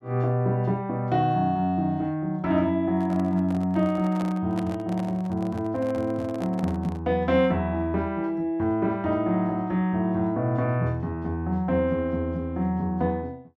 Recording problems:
handling noise; from 3 to 7 s; peak -7 dB vs average level

